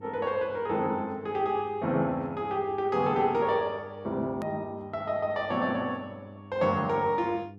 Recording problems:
hum; 50 Hz, harmonics up to 500 Hz, SNR 19 dB
click at an edit; at 4.5 s

